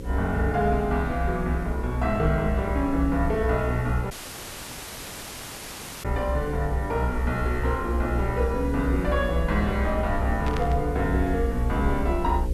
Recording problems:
hum; 60 Hz, harmonics up to 540 Hz, SNR 10 dB
hiss; slope +1 dB per octave, SNR 24 dB
rumble; below 68 Hz, strongest tone 62 Hz, SNR 3 dB
audio cutting out; at 4 s for 2 s
static burst; at 10 s; peak -4 dB vs average level

